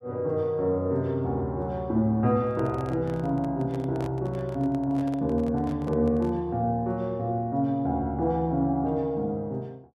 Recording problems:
microphone handling noise; from 2.5 to 6.5 s; peak -9 dB vs average level

